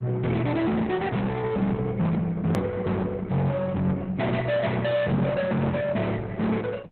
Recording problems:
lossy compression; Opus, log-spectral distance 3 dB, nothing above 13.1 kHz
distortion; soft clipping, signal-to-distortion ratio 6 dB
hard cut with a click; at 2.5 s

